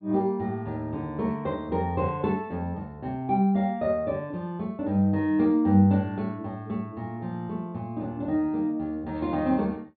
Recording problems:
low-pass filter; nothing above 4.4 kHz

